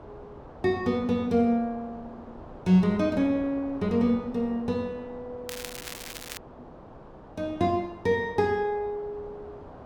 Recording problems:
wind noise; below 830 Hz, SNR 19 dB
crackling; at 5.5 s; loose cable, SNR 12 dB

